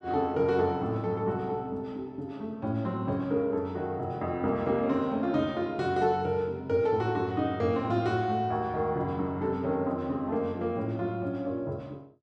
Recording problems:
none

